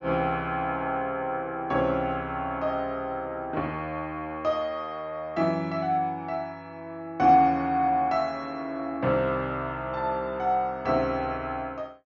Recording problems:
treble missing; nothing above 7.1 kHz

